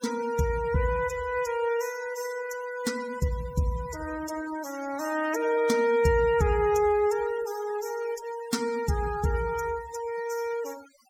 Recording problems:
noise reduction artefacts; signal-to-artefact ratio 15 dB

